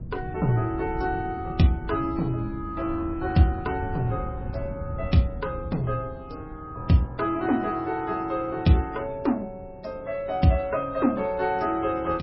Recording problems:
lossy compression; MP3, log-spectral distance 2 dB, nothing above 5.5 kHz
wind noise; below 150 Hz, SNR 12 dB

